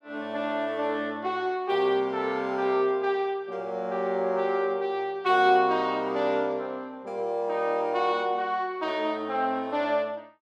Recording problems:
none

